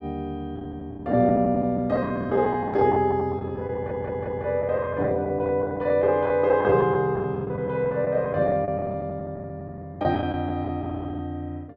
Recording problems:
lost packets; 13% of the sound replaced, filled with the last packet
audio stuttering; at 3.5 s

